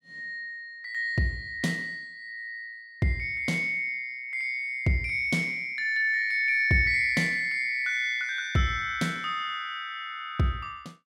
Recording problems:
none

